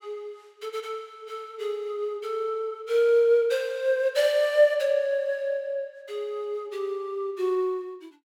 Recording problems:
none

